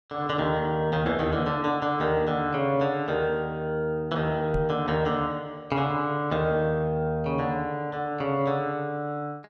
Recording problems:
microphone thump; at 4.5 s; peak 0 dB vs average level

